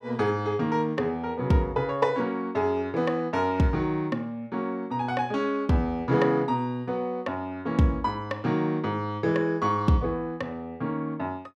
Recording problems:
none

